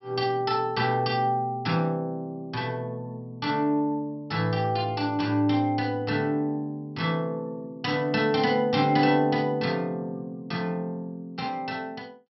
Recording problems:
treble cut off; nothing above 5.6 kHz

